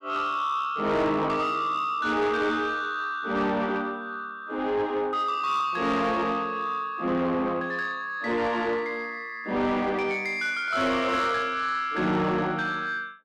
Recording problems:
distortion; soft clipping, signal-to-distortion ratio 11 dB

